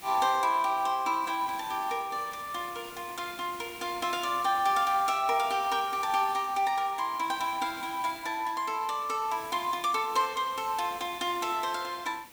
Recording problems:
hiss; slope -2 dB per octave, SNR 18 dB

